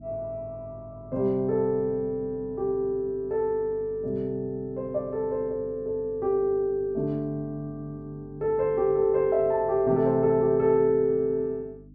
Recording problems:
electrical hum; 50 Hz, harmonics up to 300 Hz, SNR 21 dB

